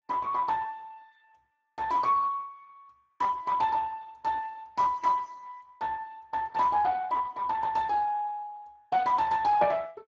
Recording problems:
codec artefacts; Speex, log-spectral distance 3 dB

